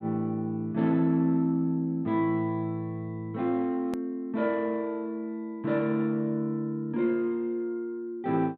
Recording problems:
click at an edit; at 4 s

